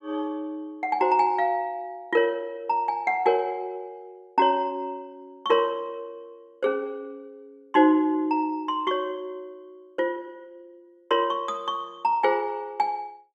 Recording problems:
none

